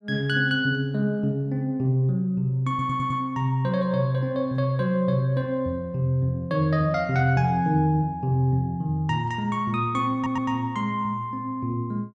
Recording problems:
stutter; at 2.5 s and at 10 s

